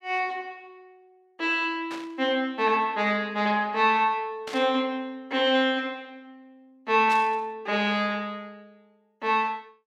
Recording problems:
static burst; at 2 s, at 4.5 s and at 7 s; peak -8 dB vs average level

